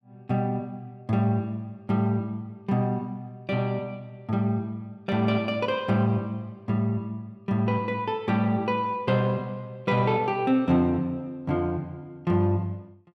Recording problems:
none

